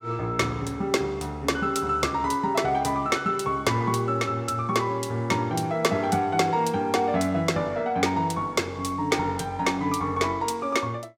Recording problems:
none

